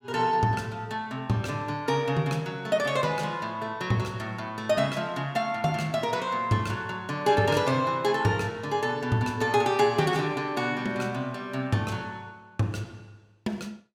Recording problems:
none

